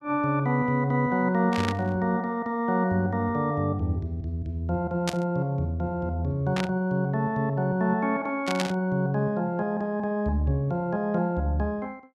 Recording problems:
burst of static; 4 times, first at 1.5 s; peak +1 dB vs average level

